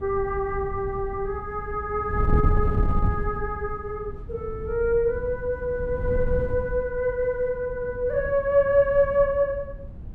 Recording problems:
wind noise; below 100 Hz, SNR 7 dB

